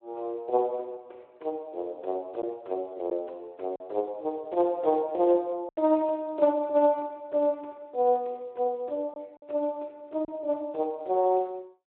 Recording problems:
telephone audio; 280 Hz to 4 kHz, Speex
packet loss; 2% of the sound replaced, filled with silence

